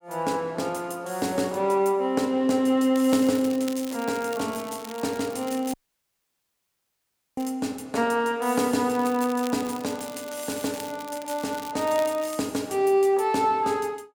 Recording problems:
crackling; from 3 to 7.5 s and from 9 to 12 s; loose cable, SNR 17 dB
audio cutting out; at 5.5 s for 1.5 s

